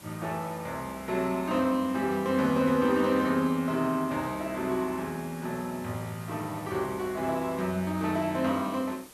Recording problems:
hiss; slope -3 dB per octave, SNR 20 dB

